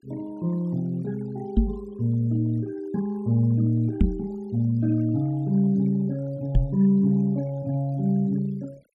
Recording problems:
noise reduction artefacts; signal-to-artefact ratio 26 dB
microphone bump; at 1.5 s, at 4 s and at 6.5 s; peak +8 dB vs average level

